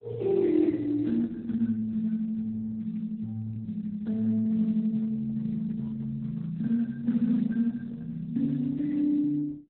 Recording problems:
lossy compression; Speex, then Opus, log-spectral distance 2 dB, nothing above 4 kHz

